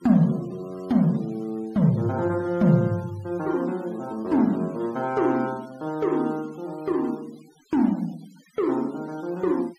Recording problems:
noise reduction artefacts; signal-to-artefact ratio 25 dB

